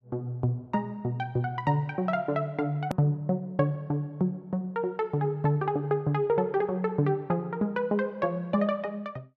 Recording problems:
click at an edit; at 3 s

